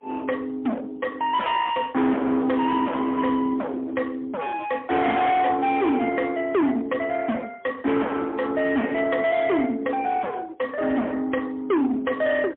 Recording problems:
phone line; 220 Hz to 3.5 kHz, AMR-NB, then MP3
distorted audio; hard clipping, signal-to-distortion ratio 7 dB

